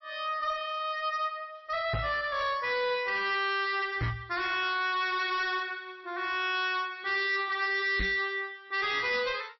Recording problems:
codec artefacts; MP3, log-spectral distance 3 dB, nothing above 5.5 kHz
distorted audio; hard clipping, uneven, signal-to-distortion ratio 10 dB
microphone thump; at 2 s, at 4 s and at 8 s; peak +2 dB vs average level

